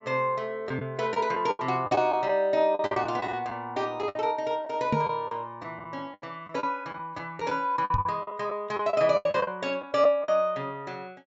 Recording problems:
treble missing; nothing above 8 kHz
lost packets; 11% of the sound replaced, filled with the last packet
knock on the microphone; at 5 s and at 8 s; peak +4 dB vs average level

